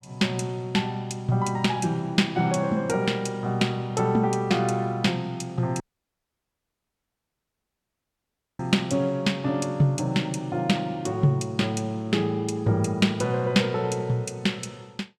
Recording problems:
audio cutting out; at 6 s for 3 s

